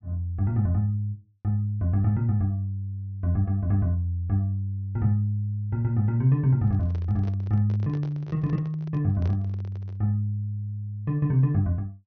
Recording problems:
low-pass filter; nothing above 6.3 kHz
microphone handling noise; from 6.5 to 10 s; peak -10 dB vs average level

